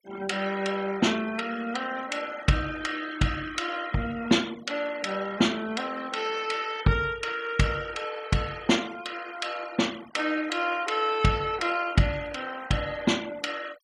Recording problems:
denoising artefacts; signal-to-artefact ratio 17 dB

